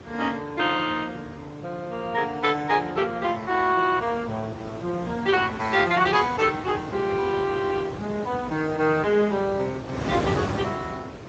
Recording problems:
codec artefacts; Speex, log-spectral distance 4 dB
wind noise; below 870 Hz, SNR 10 dB

